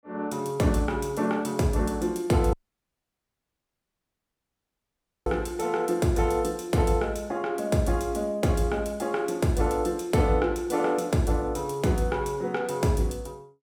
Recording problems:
dropout; at 2.5 s for 2.5 s

